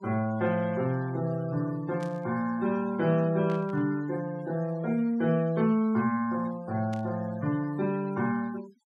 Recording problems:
noise reduction artefacts; signal-to-artefact ratio 21 dB
static burst; at 2 s, at 3.5 s and at 7 s; peak -14 dB vs average level

